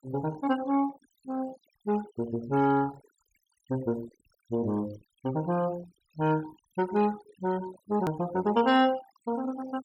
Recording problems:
noise reduction artefacts; signal-to-artefact ratio 17 dB
hard cut with a click; at 8 s

